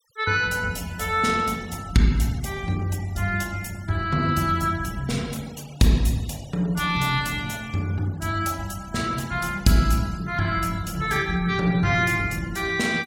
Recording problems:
noise reduction artefacts; signal-to-artefact ratio 21 dB

